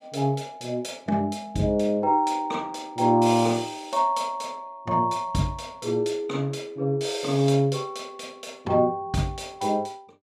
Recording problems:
none

